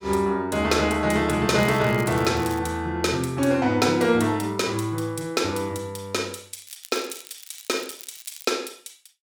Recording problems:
crackle; from 1.5 to 2.5 s and from 6.5 to 8.5 s; loose cable, SNR 18 dB

